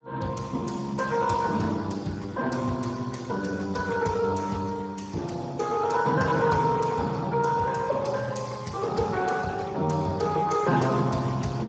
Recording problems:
lossy compression; Speex, then Speex, log-spectral distance 5 dB, nothing above 7.6 kHz

